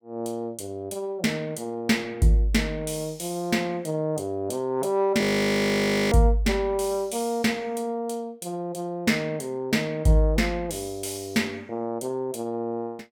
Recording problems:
frozen audio; at 5 s for 1 s

